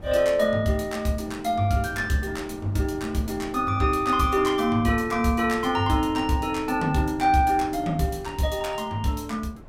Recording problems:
wind on the microphone; below 350 Hz, SNR 18 dB

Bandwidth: 16 kHz